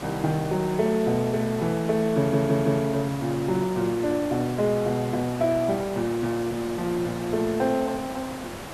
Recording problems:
hiss; slope -5 dB per octave, SNR 12 dB
audio stuttering; at 2 s

